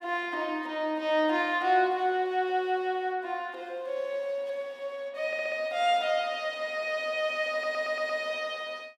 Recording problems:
audio stuttering; at 5.5 s and at 7.5 s

